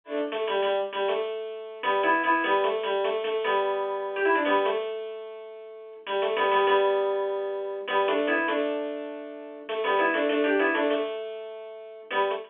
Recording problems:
telephone audio; 240 Hz to 3.4 kHz, G.711

